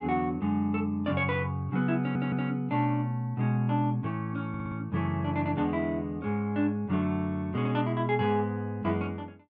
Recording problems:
audio stuttering; at 2 s and at 4.5 s

